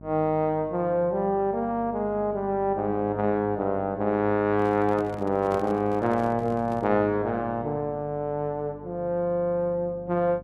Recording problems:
mains hum; 50 Hz, harmonics up to 700 Hz, SNR 20 dB
handling noise; from 4.5 to 7 s; peak -6 dB vs average level

